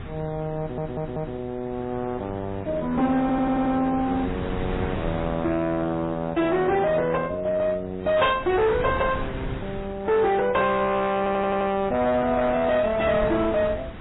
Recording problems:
codec artefacts; AAC, then MP3, log-spectral distance 3 dB, nothing above 3.2 kHz
distorted audio; hard clipping, uneven, signal-to-distortion ratio 10 dB
wind on the microphone; below 550 Hz, SNR 13 dB
audio stuttering; at 0.5 s, at 3 s and at 11 s

